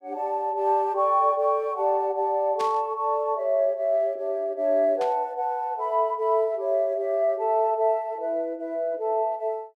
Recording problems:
burst of static; at 2.5 s and at 5 s; peak -9 dB vs average level

